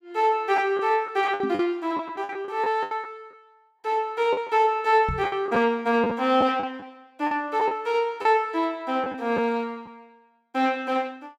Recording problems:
lost packets; 8% of the sound replaced, filled with the last packet
microphone thump; at 1.5 s and at 5 s; peak -3 dB vs average level

